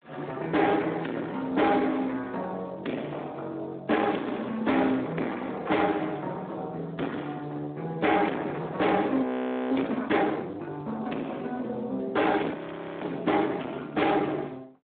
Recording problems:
phone line; 220 Hz to 3.6 kHz, Speex
distortion; soft clipping, signal-to-distortion ratio 11 dB
audio freezing; at 9 s and at 13 s

